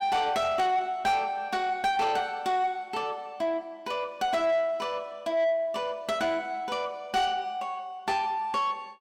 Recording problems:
distorted audio; soft clipping, signal-to-distortion ratio 11 dB

